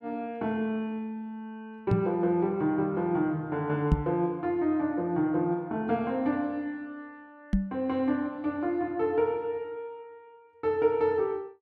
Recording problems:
microphone bump; at 2 s, at 4 s and at 7.5 s; peak +8 dB vs average level

